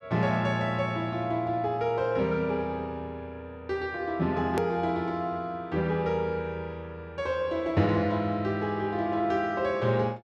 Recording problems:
edit click; at 4.5 s

